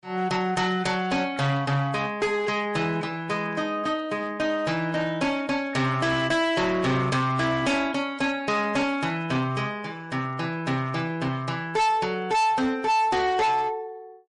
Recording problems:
codec artefacts; MP3, log-spectral distance 2 dB, nothing above 10.4 kHz
distortion; hard clipping, uneven, signal-to-distortion ratio 7 dB

